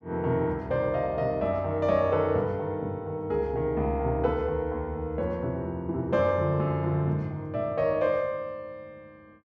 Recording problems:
none

